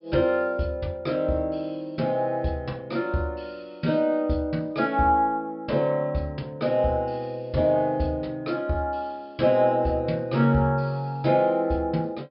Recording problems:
treble missing; nothing above 5.3 kHz

